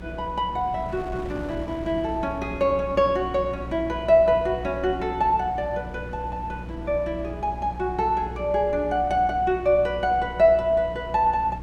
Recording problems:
electrical hum; 60 Hz, harmonics up to 300 Hz, SNR 15 dB
wind on the microphone; below 480 Hz, SNR 18 dB

